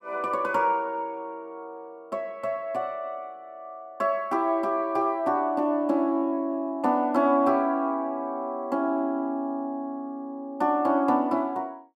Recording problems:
none

